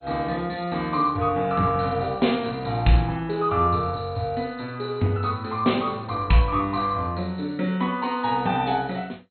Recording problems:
lossy compression; MP2, log-spectral distance 7 dB, nothing above 4.2 kHz

